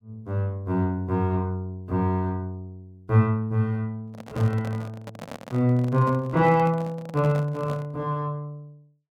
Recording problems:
microphone handling noise; from 4 to 8 s; peak -8 dB vs average level

